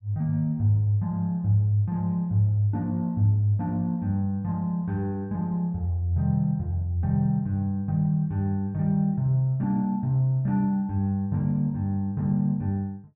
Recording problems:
none

